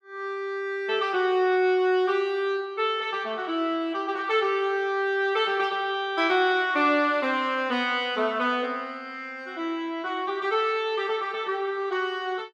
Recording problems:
none

